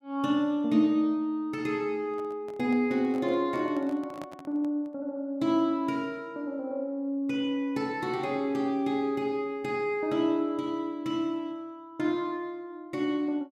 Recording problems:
handling noise; from 2 to 5 s; peak -10 dB vs average level

